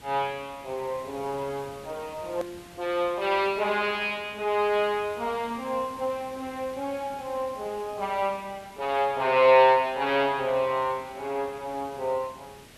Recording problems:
background hiss; slope -3 dB per octave, SNR 21 dB
hard cut with a click; at 2.5 s

